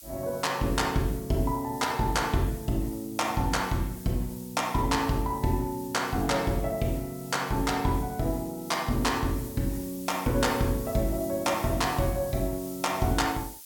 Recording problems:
hiss; slope +4 dB per octave, SNR 15 dB

